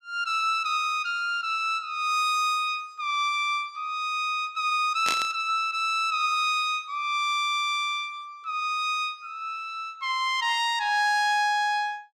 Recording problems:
burst of static; at 5 s; peak +1 dB vs average level

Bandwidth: 15.5 kHz